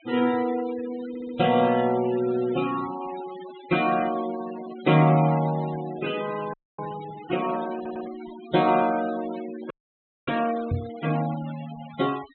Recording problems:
low-pass filter; nothing above 4 kHz
denoising artefacts; signal-to-artefact ratio 17 dB
stutter; at 1 s and at 8 s
audio freezing; at 6.5 s and at 9.5 s for 0.5 s
knock on the microphone; at 11 s; peak +2 dB vs average level

